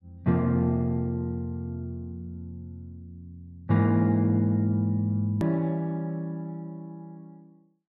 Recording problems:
hard cut with a click; at 5.5 s

